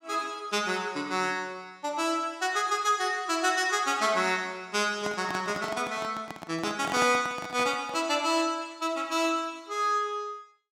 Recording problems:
handling noise; from 5 to 8 s; peak -2 dB vs average level

